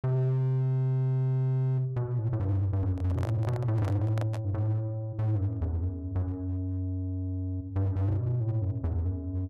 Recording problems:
distortion; hard clipping, uneven, signal-to-distortion ratio 11 dB
handling noise; from 3 to 4.5 s; peak -5 dB vs average level

